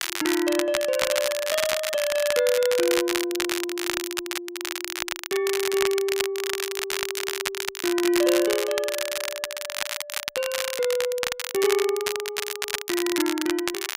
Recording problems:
crackle; vinyl, SNR 3 dB

